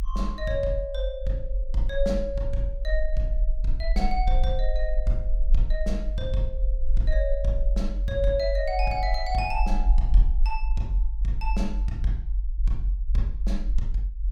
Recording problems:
low-frequency rumble; below 46 Hz, SNR -3 dB

